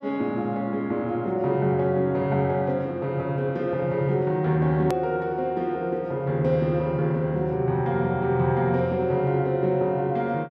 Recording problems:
edit click; at 5 s

